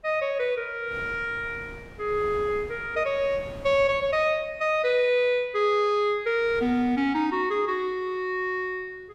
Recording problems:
wind on the microphone; below 660 Hz, SNR 20 dB

